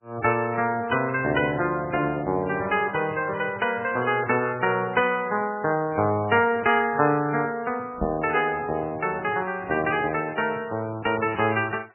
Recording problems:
lossy codec; MP3, log-spectral distance 3 dB, nothing above 2.5 kHz
microphone thump; at 8 s; peak -2 dB vs average level

